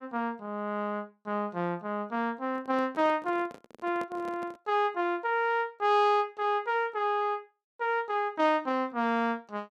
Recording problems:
handling noise; from 2.5 to 4.5 s; peak -8 dB vs average level

